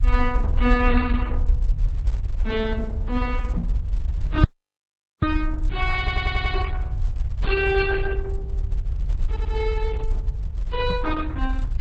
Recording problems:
lossy codec; MP3, then Opus, log-spectral distance 2 dB
rumble; below 68 Hz, SNR -1 dB
microphone thump; at 3.5 s, at 8 s and at 11 s; peak +4 dB vs average level
audio cutting out; at 4.5 s for 1 s
audio stuttering; at 6 s and at 9.5 s

